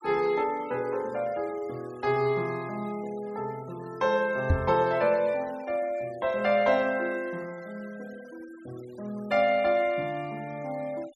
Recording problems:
denoising artefacts; signal-to-artefact ratio 24 dB
microphone thump; at 4.5 s; peak +7 dB vs average level

